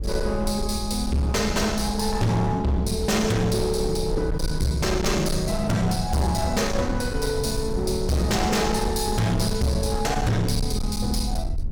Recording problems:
distortion; hard clipping, signal-to-distortion ratio 8 dB
rumble; below 94 Hz, SNR 7 dB

